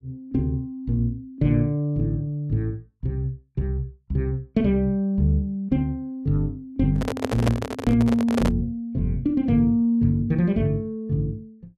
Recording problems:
microphone handling noise; from 7 to 8.5 s; peak +4 dB vs average level

